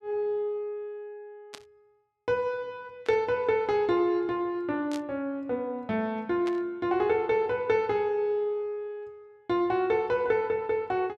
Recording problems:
static burst; 4 times, first at 1.5 s; peak -9 dB vs average level

